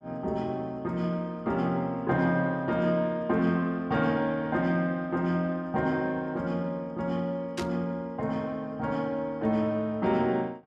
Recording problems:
static burst; at 7.5 s; peak -3 dB vs average level

